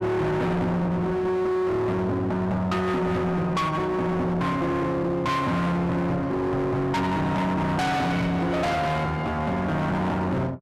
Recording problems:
distorted audio; hard clipping, uneven, signal-to-distortion ratio 5 dB

